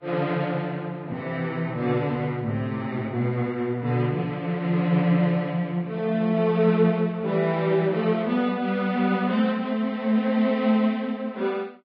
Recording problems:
codec artefacts; Vorbis, log-spectral distance 2 dB

